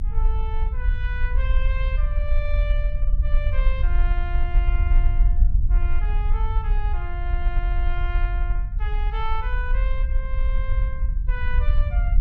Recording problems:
low-frequency rumble; below 50 Hz, SNR -11 dB

